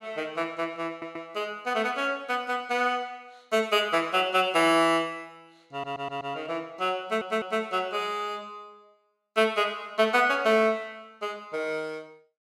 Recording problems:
stutter; at 1 s, at 5.5 s and at 7 s

